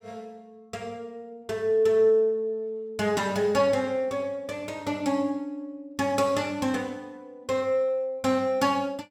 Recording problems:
none

